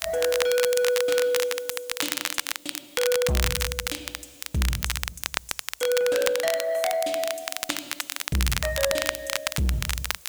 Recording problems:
distorted audio; soft clipping, signal-to-distortion ratio 11 dB
background hiss; slope 0 dB per octave, SNR 22 dB
crackling; vinyl, SNR 2 dB

